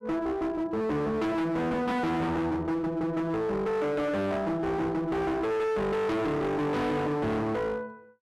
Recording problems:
distortion; hard clipping, uneven, signal-to-distortion ratio 5 dB

